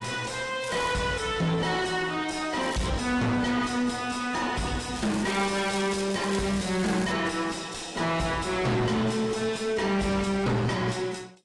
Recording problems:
lossy codec; AAC, log-spectral distance 5 dB, nothing above 10.4 kHz
distortion; soft clipping, signal-to-distortion ratio 5 dB
crackle; 4 times, first at 0.5 s; loose cable, SNR 14 dB

